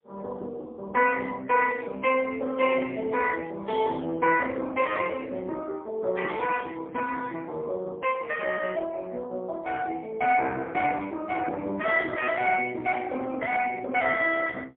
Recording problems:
telephone audio; 300 Hz to 3.1 kHz, AMR-NB, then MP3
burst of static; at 11 s; peak -20 dB vs average level

